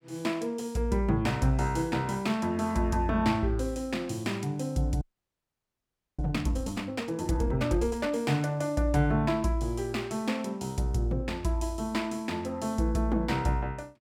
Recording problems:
audio freezing; at 5 s for 1 s

